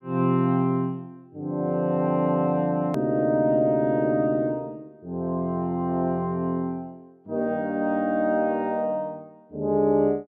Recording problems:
click at an edit; at 3 s

